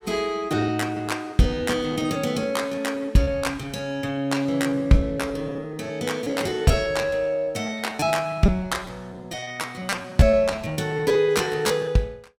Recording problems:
lost packets; 15% of the sound replaced, filled with repeated pitch periods

